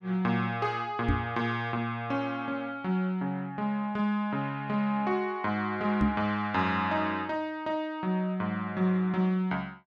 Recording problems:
knock on the microphone; at 1 s and at 6 s; peak +5 dB vs average level

